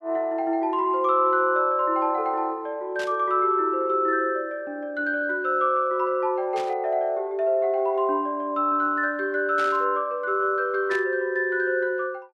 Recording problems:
burst of static; 4 times, first at 3 s; peak -9 dB vs average level

